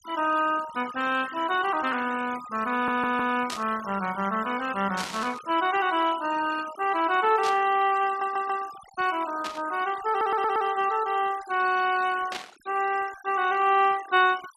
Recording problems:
noise reduction artefacts; signal-to-artefact ratio 17 dB
stutter; at 2.5 s, at 8 s and at 10 s
static burst; 5 times, first at 3.5 s; peak -3 dB vs average level

